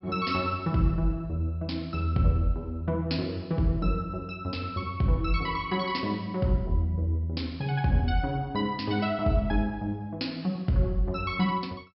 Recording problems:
treble cut off; nothing above 5.4 kHz

